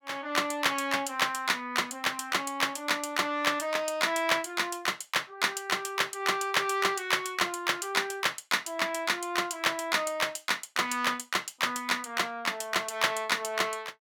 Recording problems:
none

